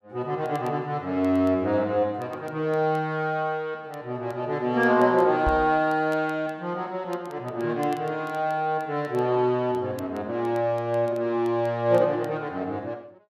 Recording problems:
crackling; vinyl, SNR 30 dB
microphone bump; at 5.5 s; peak 0 dB vs average level

